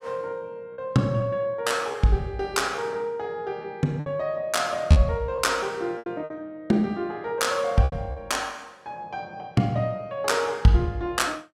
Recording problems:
lost packets; 5% of the sound replaced, filled with repeated pitch periods

